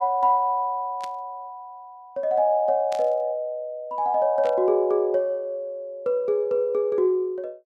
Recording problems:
static burst; at 1 s, at 3 s and at 4.5 s; peak -11 dB vs average level

